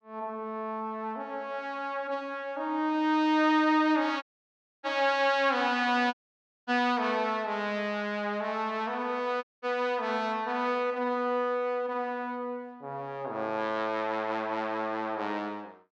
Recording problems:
audio cutting out; at 4 s for 0.5 s, at 6 s for 0.5 s and at 9.5 s

